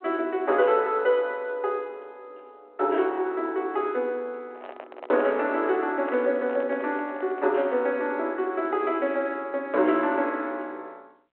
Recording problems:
telephone audio; 300 Hz to 3.3 kHz, G.726
handling noise; from 4.5 to 7.5 s; peak -8 dB vs average level

